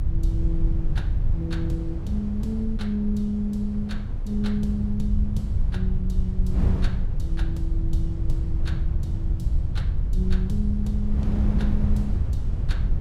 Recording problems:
rumble; below 76 Hz, SNR -2 dB
wind on the microphone; below 130 Hz, SNR 3 dB

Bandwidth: 16 kHz